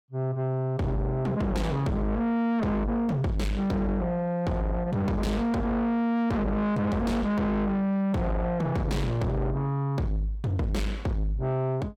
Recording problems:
distorted audio; soft clipping, signal-to-distortion ratio 6 dB

